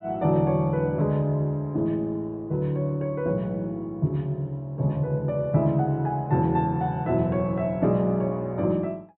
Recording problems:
treble missing; nothing above 4 kHz

